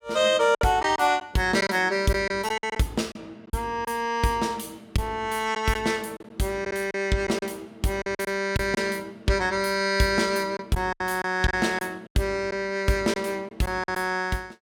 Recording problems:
packet loss; 7% of the sound replaced, filled with silence

